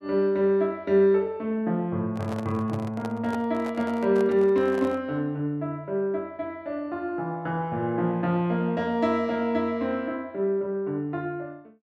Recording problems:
microphone handling noise; from 2 to 5 s; peak -7 dB vs average level

